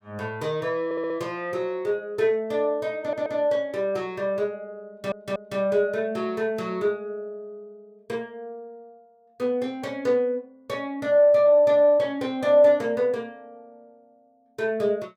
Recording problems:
stutter; at 1 s, at 3 s and at 5 s

